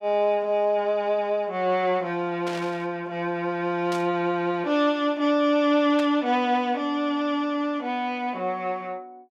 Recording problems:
burst of static; at 2.5 s, at 4 s and at 6 s; peak -7 dB vs average level

